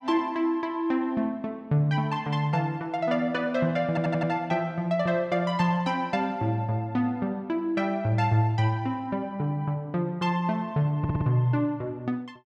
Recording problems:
audio stuttering; at 4 s and at 11 s

